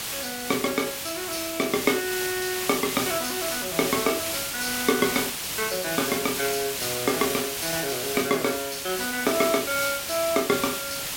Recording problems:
hiss; slope 0 dB per octave, SNR 2 dB

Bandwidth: 16.5 kHz